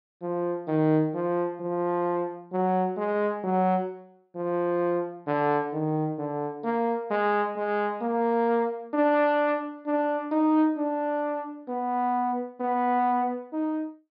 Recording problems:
treble cut off; nothing above 5.5 kHz

